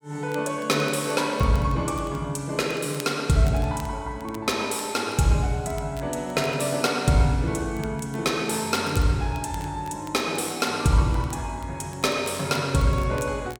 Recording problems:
crackling; vinyl, SNR 22 dB

